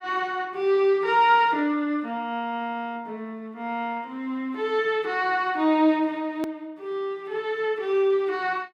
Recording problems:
click at an edit; at 6.5 s

